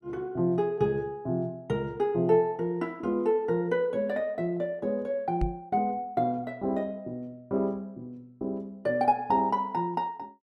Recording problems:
knock on the microphone; at 5.5 s; peak +2 dB vs average level

